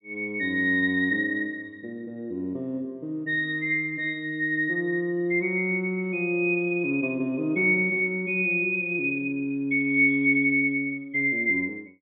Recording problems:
treble cut off; nothing above 4 kHz

